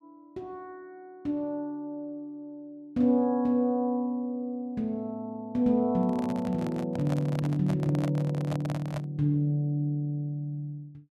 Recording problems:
microphone handling noise; from 6 to 9 s; peak -3 dB vs average level

